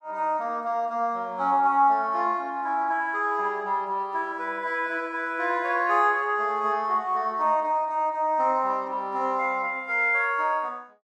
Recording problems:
none

